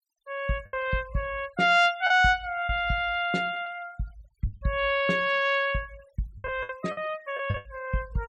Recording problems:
denoising artefacts; signal-to-artefact ratio 24 dB
packet loss; 7% of the sound replaced, filled with the last packet

